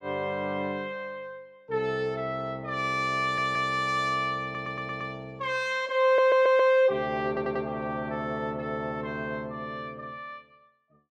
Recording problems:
audio stuttering; 4 times, first at 3 s

